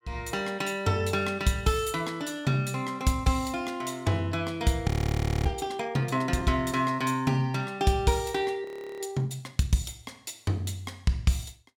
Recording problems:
audio freezing; at 5 s for 0.5 s and at 8.5 s

